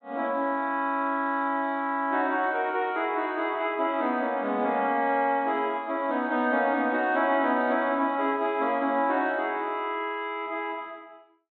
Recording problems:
low-pass filter; nothing above 4 kHz

